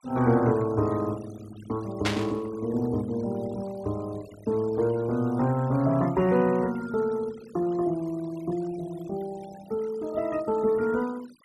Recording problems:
noise reduction artefacts; signal-to-artefact ratio 21 dB
static burst; at 2 s; peak +4 dB vs average level

